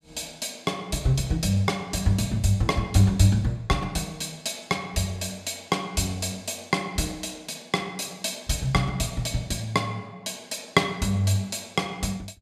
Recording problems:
none

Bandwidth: 14.5 kHz